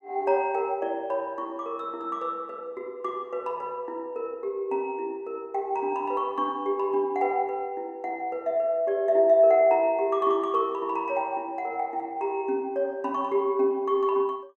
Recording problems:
none

